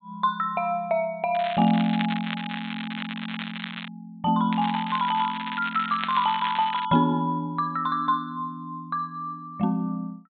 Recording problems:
low-pass filter; nothing above 4 kHz
crackling; from 1.5 to 4 s and from 4.5 to 7 s; loose cable, SNR 9 dB

